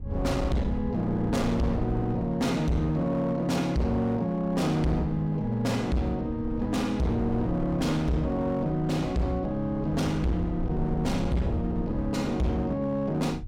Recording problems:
distorted audio; hard clipping, signal-to-distortion ratio 8 dB
wind on the microphone; below 100 Hz, SNR 10 dB

